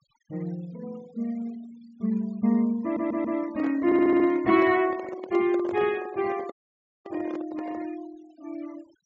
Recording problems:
treble cut off; nothing above 8 kHz
noise reduction artefacts; signal-to-artefact ratio 25 dB
audio stuttering; at 3 s and at 4 s
microphone handling noise; from 3 to 8 s; peak -7 dB vs average level
audio cutting out; at 6.5 s for 0.5 s

